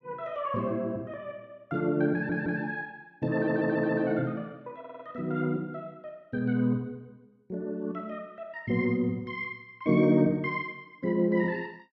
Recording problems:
stutter; at 2 s, at 3.5 s and at 5 s

